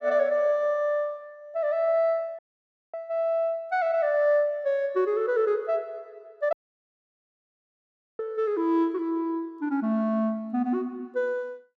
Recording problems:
audio cutting out; at 2.5 s for 0.5 s and at 6.5 s for 1.5 s

